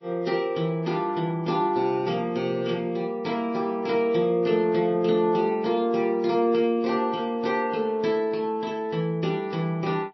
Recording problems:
lossy codec; MP3, then MP3, log-spectral distance 2 dB, nothing above 5.7 kHz

